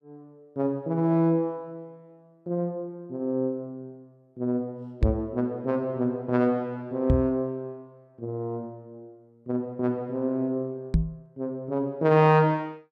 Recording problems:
microphone thump; at 5 s, at 7 s and at 11 s; peak +8 dB vs average level

